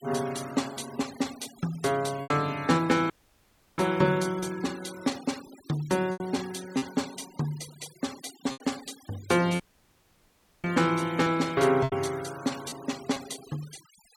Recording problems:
noise reduction artefacts; signal-to-artefact ratio 17 dB
packet loss; 4% of the sound replaced, filled with repeated pitch periods
dropout; at 3 s for 0.5 s and at 9.5 s for 1 s

